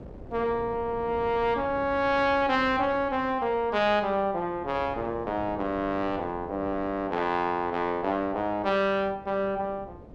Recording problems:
wind noise; below 460 Hz, SNR 18 dB

